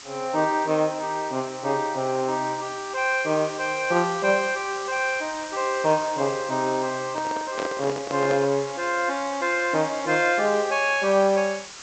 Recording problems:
treble cut off; nothing above 8 kHz
background hiss; slope +1 dB per octave, SNR 14 dB
handling noise; from 7 to 8.5 s; peak -3 dB vs average level

